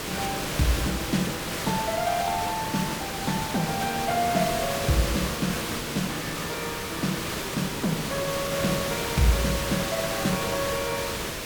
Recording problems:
hiss; SNR 1 dB

